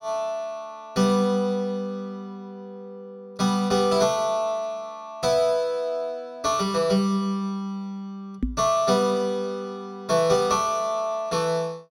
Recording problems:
microphone bump; at 8.5 s; peak +3 dB vs average level

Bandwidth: 16 kHz